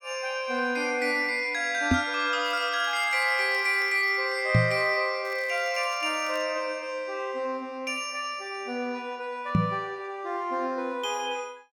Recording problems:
microphone bump; at 2 s, at 4.5 s and at 9.5 s; peak +8 dB vs average level
crackle; from 2.5 to 4 s and from 5.5 to 6.5 s; loose cable, SNR 25 dB

